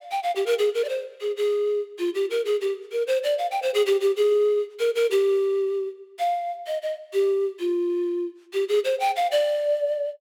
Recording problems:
none

